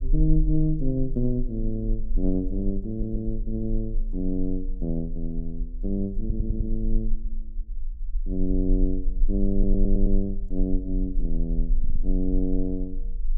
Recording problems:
rumble; below 34 Hz, strongest tone 18 Hz, SNR 2 dB
audio stuttering; 4 times, first at 3 s

